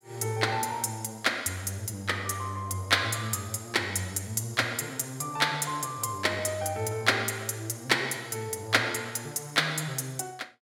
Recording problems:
none

